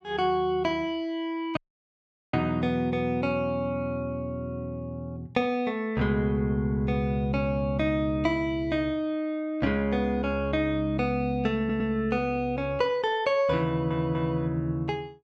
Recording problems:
dropout; at 1.5 s for 1 s
audio stuttering; at 12 s and at 14 s

